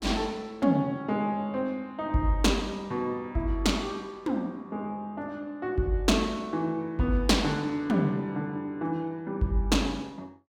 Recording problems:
none

